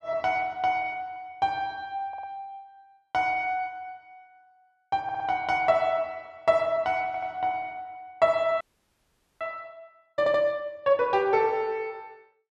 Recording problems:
stutter; 4 times, first at 2 s
frozen audio; at 8.5 s for 1 s

